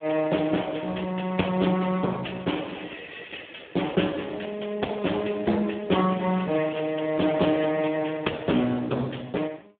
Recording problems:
telephone audio; 150 Hz to 3.5 kHz, Speex

